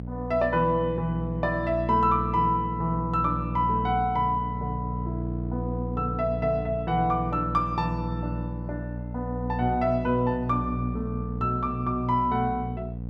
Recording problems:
mains hum; 60 Hz, harmonics up to 540 Hz, SNR 6 dB

